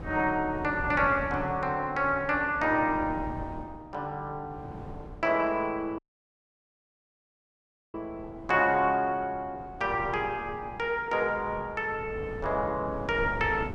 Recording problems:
wind on the microphone; below 310 Hz, SNR 15 dB
dropout; at 6 s for 2 s

